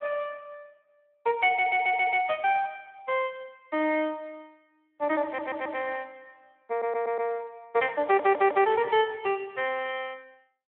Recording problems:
telephone audio; 280 Hz to 3.4 kHz, Speex
audio stuttering; 4 times, first at 1.5 s

